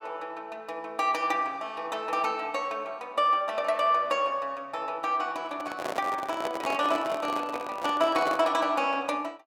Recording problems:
microphone handling noise; from 5.5 to 8.5 s; peak -1 dB vs average level

